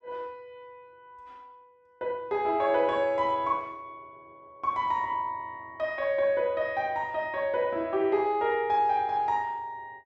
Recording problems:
none

